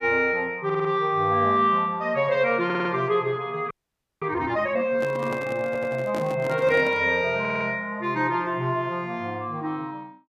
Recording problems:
audio stuttering; 4 times, first at 0.5 s
frozen audio; at 3.5 s for 0.5 s
microphone handling noise; from 5 to 7 s; peak -5 dB vs average level

